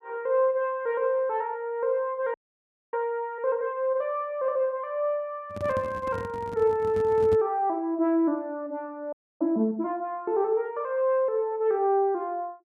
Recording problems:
audio freezing; at 2.5 s for 0.5 s and at 9 s
handling noise; from 5.5 to 7.5 s; peak -3 dB vs average level

